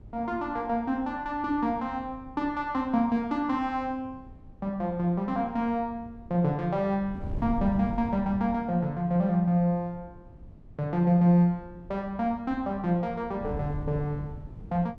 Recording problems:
wind on the microphone; below 150 Hz, SNR 16 dB

